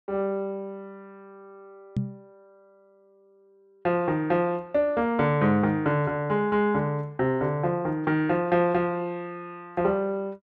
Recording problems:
knock on the microphone; at 2 s; peak +2 dB vs average level

